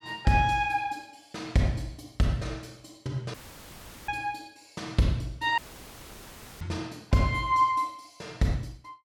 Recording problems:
audio cutting out; at 3.5 s for 0.5 s and at 5.5 s for 1 s; filled with static

